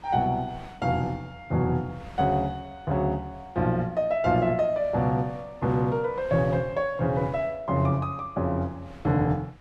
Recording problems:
wind on the microphone; below 1 kHz, SNR 23 dB

